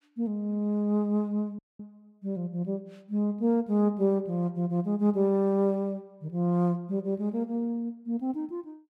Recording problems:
audio cutting out; at 1.5 s

